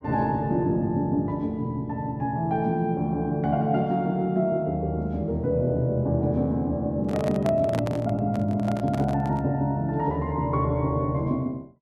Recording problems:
handling noise; from 7 to 9.5 s; peak -4 dB vs average level

